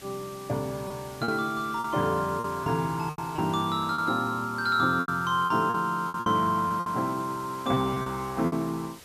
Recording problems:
background hiss; slope -1 dB per octave, SNR 19 dB
lost packets; 9% of the sound replaced, filled with repeated pitch periods

